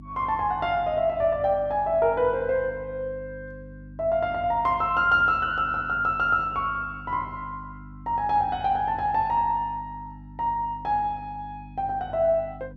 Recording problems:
electrical hum; 50 Hz, harmonics up to 300 Hz, SNR 19 dB

